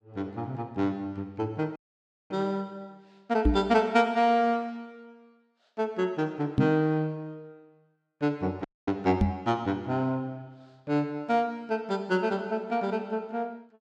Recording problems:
dropout; at 2 s for 0.5 s and at 8.5 s
microphone bump; at 3.5 s, at 6.5 s and at 9 s; peak +8 dB vs average level

